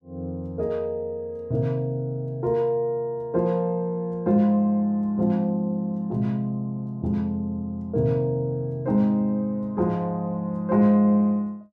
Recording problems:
none

